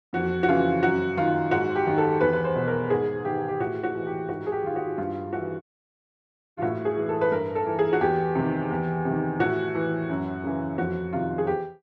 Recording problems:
dropout; at 5.5 s for 1 s

